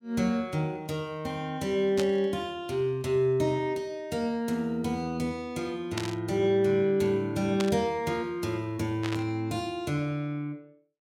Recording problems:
burst of static; 4 times, first at 2 s; peak -1 dB vs average level

